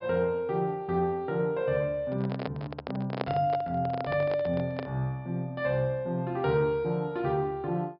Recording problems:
treble missing; nothing above 5.5 kHz
microphone handling noise; from 2 to 5 s; peak +2 dB vs average level

